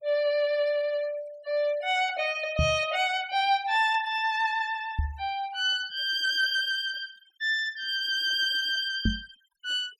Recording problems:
noise reduction artefacts; signal-to-artefact ratio 23 dB
microphone bump; at 2.5 s, at 5 s and at 9 s; peak +4 dB vs average level

